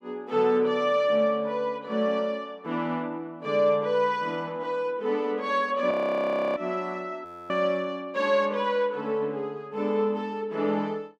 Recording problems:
frozen audio; at 6 s for 0.5 s and at 7.5 s

